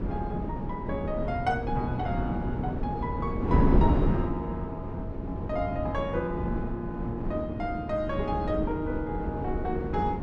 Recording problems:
wind noise; below 290 Hz, SNR -1 dB

